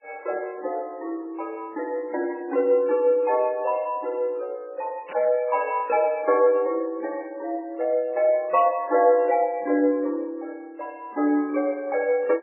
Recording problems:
lossy codec; MP3, log-spectral distance 2 dB, nothing above 2.3 kHz
static burst; at 5 s and at 8.5 s; peak -11 dB vs average level

